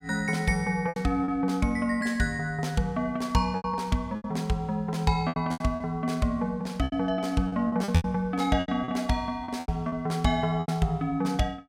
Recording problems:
packet loss; 10% of the sound replaced, filled with repeated pitch periods

